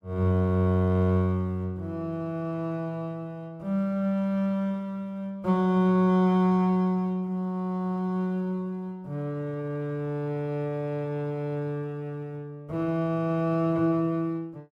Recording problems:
none

